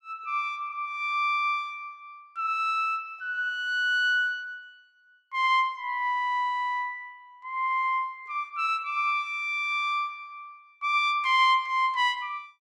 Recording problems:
none

